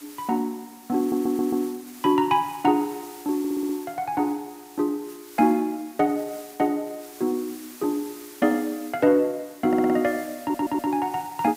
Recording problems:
hiss; slope 0 dB per octave, SNR 19 dB
audio stuttering; 4 times, first at 1 s

